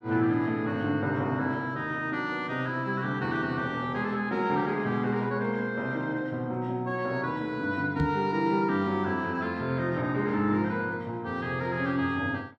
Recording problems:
microphone bump; at 8 s; peak +2 dB vs average level

